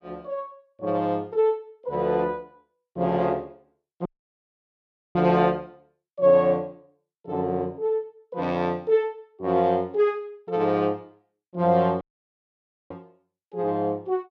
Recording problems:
dropout; at 4 s for 1 s and at 12 s for 1 s

